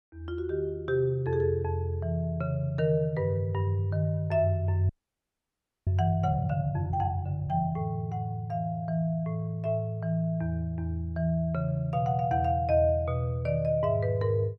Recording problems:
frozen audio; at 5 s for 1 s

